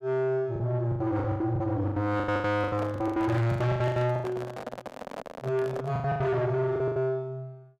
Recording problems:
distorted audio; soft clipping, signal-to-distortion ratio 5 dB
lost packets; 20% of the sound replaced, filled with the last packet
microphone handling noise; from 2.5 to 6 s; peak -4 dB vs average level

